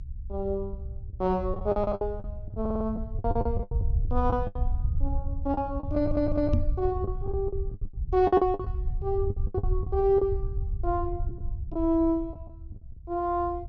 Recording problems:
treble missing; nothing above 6.8 kHz
rumble; below 82 Hz, SNR 5 dB
packet loss; 13% of the sound replaced, filled with the last packet
stutter; at 2.5 s and at 6 s
knock on the microphone; at 6.5 s; peak +8 dB vs average level

